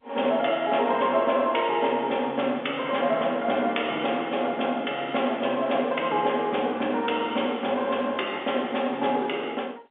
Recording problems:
telephone audio; 280 Hz to 3.5 kHz, G.711

